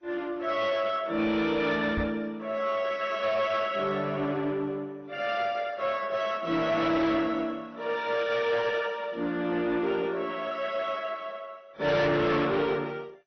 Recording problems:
lossy compression; MP2, then AAC, log-spectral distance 3 dB, nothing above 6 kHz
distorted audio; soft clipping, signal-to-distortion ratio 12 dB
microphone bump; at 2 s; peak -1 dB vs average level

